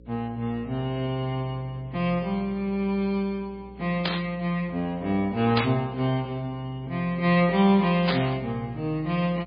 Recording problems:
lossy codec; MP3, log-spectral distance 2 dB, nothing above 4.4 kHz
mains hum; 60 Hz, harmonics up to 540 Hz, SNR 22 dB
burst of static; at 4 s, at 5.5 s and at 8 s; peak +4 dB vs average level

